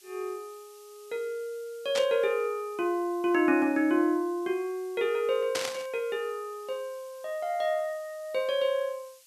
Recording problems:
hiss; slope +5 dB per octave, SNR 25 dB
static burst; at 2 s and at 5.5 s; peak +2 dB vs average level

